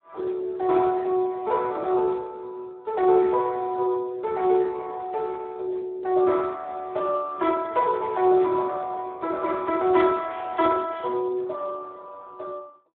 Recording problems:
telephone audio; 320 Hz to 3 kHz, Speex

